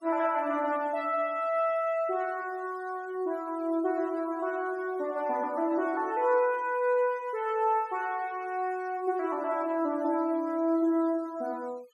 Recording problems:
noise reduction artefacts; signal-to-artefact ratio 27 dB

